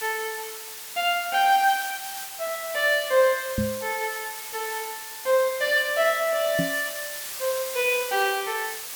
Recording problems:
hiss; slope +2 dB per octave, SNR 9 dB
microphone thump; at 3.5 s and at 6.5 s; peak +1 dB vs average level

